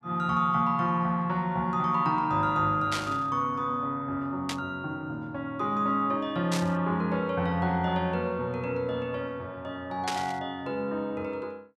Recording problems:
static burst; 4 times, first at 3 s; peak +1 dB vs average level

